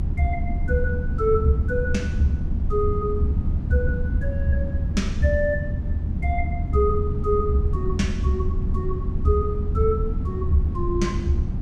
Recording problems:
low-frequency rumble; below 110 Hz, SNR 1 dB

